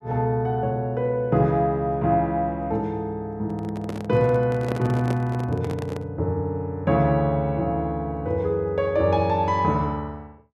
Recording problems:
microphone handling noise; from 3.5 to 6 s; peak -2 dB vs average level

